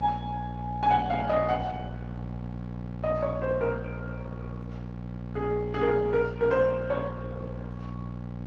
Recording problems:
lossy compression; Vorbis, then Opus, log-spectral distance 2 dB
electrical hum; 60 Hz, harmonics up to 1.1 kHz, SNR 9 dB

